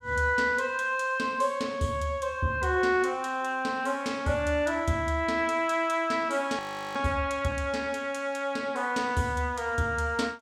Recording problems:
frozen audio; at 6.5 s

